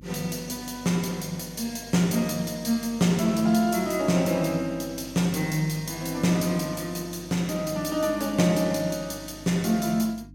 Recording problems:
electrical hum; 50 Hz, harmonics up to 300 Hz, SNR 22 dB

